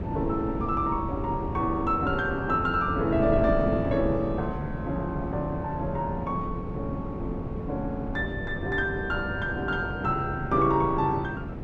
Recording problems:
hum; 50 Hz, harmonics up to 400 Hz, SNR 20 dB
wind noise; below 310 Hz, SNR 6 dB

